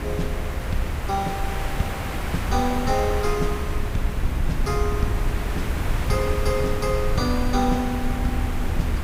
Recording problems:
background hiss; SNR 5 dB
rumble; below 80 Hz, SNR 1 dB

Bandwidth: 15.5 kHz